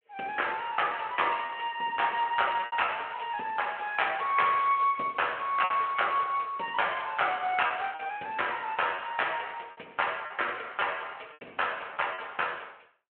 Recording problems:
telephone audio; 260 Hz to 3.3 kHz, Speex
packet loss; 5% of the sound replaced, filled with repeated pitch periods

